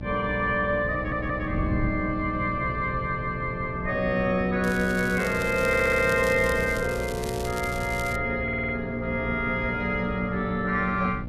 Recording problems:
hum; 60 Hz, harmonics up to 900 Hz, SNR 11 dB
wind noise; below 180 Hz, SNR 12 dB
audio stuttering; at 1 s, at 5.5 s and at 8.5 s
crackle; from 4.5 to 8 s; loose cable, SNR 15 dB

